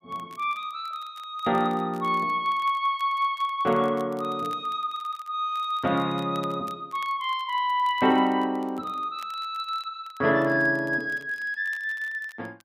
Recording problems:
crackling; vinyl, SNR 27 dB

